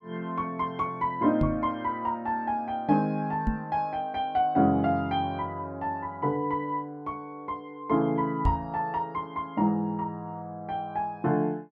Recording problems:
microphone bump; at 1.5 s, at 3.5 s and at 8.5 s; peak +5 dB vs average level

